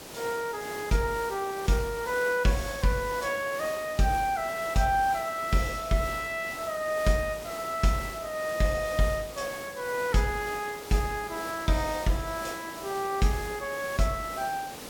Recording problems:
hiss; slope -4 dB per octave, SNR 12 dB

